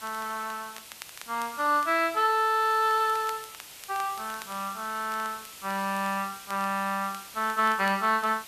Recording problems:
hiss; slope +1 dB per octave, SNR 15 dB
crackle; vinyl, SNR 22 dB

